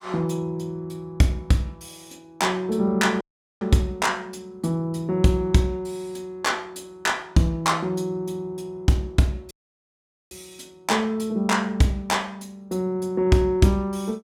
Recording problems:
audio cutting out; at 3 s and at 9.5 s for 1 s

